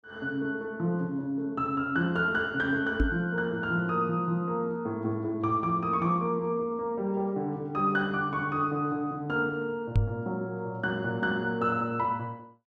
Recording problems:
microphone thump; at 3 s and at 10 s; peak +7 dB vs average level

